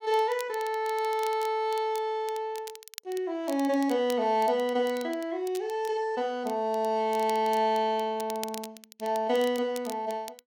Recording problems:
crackling; vinyl, SNR 18 dB

